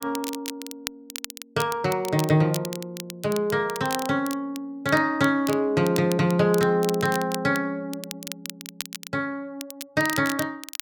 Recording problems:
crackling; vinyl, SNR 12 dB

